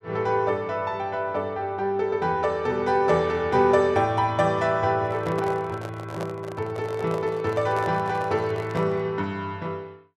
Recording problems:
handling noise; from 5 to 9 s; peak -5 dB vs average level

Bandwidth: 13.5 kHz